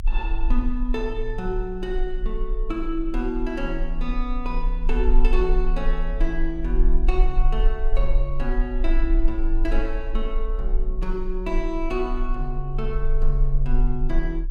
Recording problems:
rumble; below 36 Hz, strongest tone 24 Hz, SNR -2 dB

